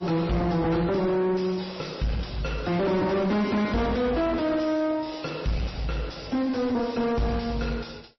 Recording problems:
codec artefacts; MP3, then MP3, log-spectral distance 4 dB, nothing above 5.7 kHz
distorted audio; soft clipping, signal-to-distortion ratio 5 dB

